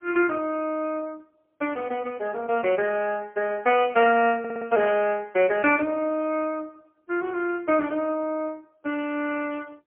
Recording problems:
telephone audio; 260 Hz to 3.1 kHz, AMR-NB, then MP3
audio stuttering; at 4.5 s

